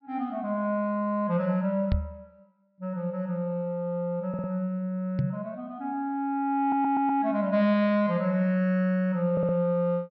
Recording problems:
low-pass filter; nothing above 5.7 kHz
knock on the microphone; at 2 s and at 5 s; peak +4 dB vs average level
audio stuttering; at 4.5 s, at 6.5 s and at 9.5 s

